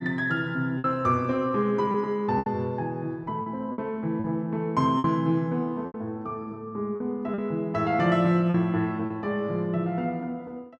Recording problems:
packet loss; 6% of the sound replaced, filled with repeated pitch periods

